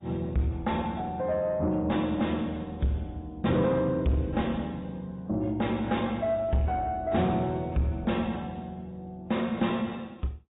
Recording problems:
low-pass filter; nothing above 3.8 kHz
codec artefacts; AAC, log-spectral distance 3 dB
distortion; soft clipping, signal-to-distortion ratio 10 dB

